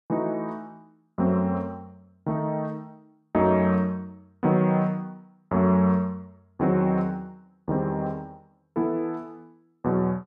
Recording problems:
none

